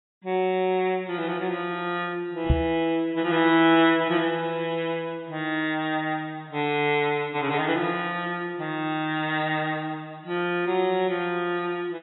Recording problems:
lossy compression; AAC, log-spectral distance 3 dB, nothing above 3.8 kHz
microphone thump; at 2.5 s; peak +7 dB vs average level

